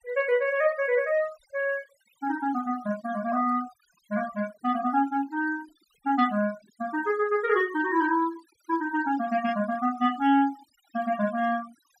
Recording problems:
denoising artefacts; signal-to-artefact ratio 20 dB

